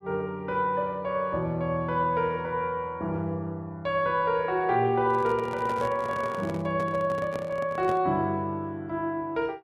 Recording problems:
handling noise; from 5 to 8 s; peak -6 dB vs average level

